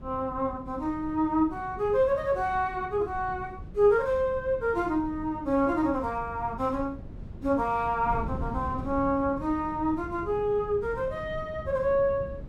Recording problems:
wind on the microphone; below 190 Hz, SNR 14 dB

